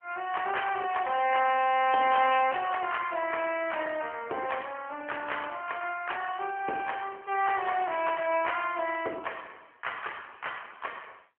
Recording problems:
phone line; 300 Hz to 3.2 kHz, AMR-NB

